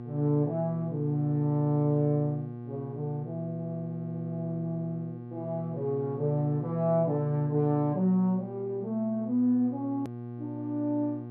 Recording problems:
hum; 60 Hz, harmonics up to 840 Hz, SNR 11 dB
hard cut with a click; at 10 s

